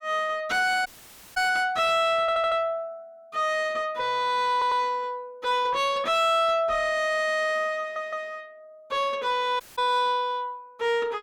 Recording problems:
distortion; soft clipping, signal-to-distortion ratio 6 dB
dropout; at 1 s for 0.5 s and at 9.5 s
audio stuttering; at 2 s, at 4.5 s and at 8 s

